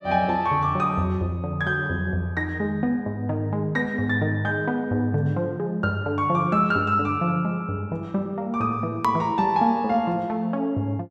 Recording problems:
click at an edit; at 9 s

